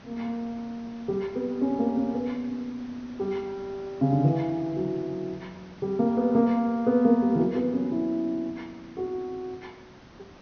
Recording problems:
low-pass filter; nothing above 6.4 kHz
background hiss; slope -5 dB per octave, SNR 22 dB

